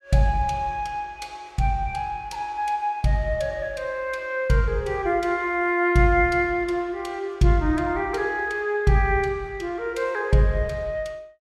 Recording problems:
none

